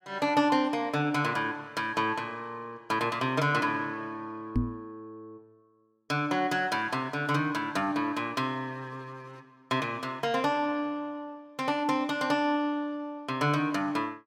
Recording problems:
knock on the microphone; at 4.5 s; peak +5 dB vs average level

